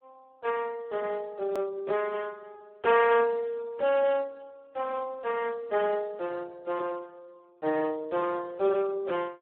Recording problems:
telephone audio; 280 Hz to 3.4 kHz, Speex
hard cut with a click; at 1.5 s

